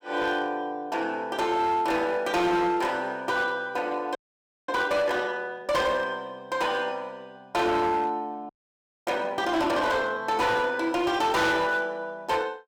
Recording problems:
distorted audio; hard clipping, signal-to-distortion ratio 11 dB
audio freezing; at 4 s for 0.5 s and at 8.5 s for 0.5 s

